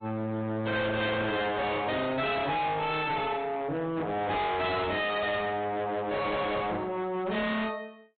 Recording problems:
low-pass filter; nothing above 3.8 kHz
lossy compression; AAC, log-spectral distance 3 dB
distorted audio; hard clipping, signal-to-distortion ratio 6 dB

